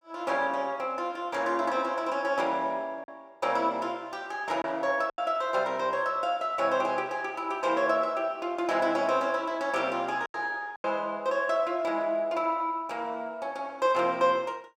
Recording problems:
packet loss; 2% of the sound replaced, filled with silence

